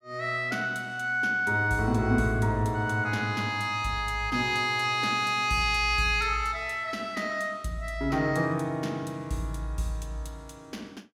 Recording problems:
none

